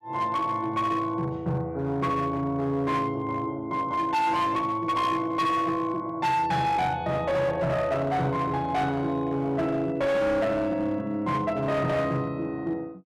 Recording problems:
distortion; hard clipping, signal-to-distortion ratio 10 dB

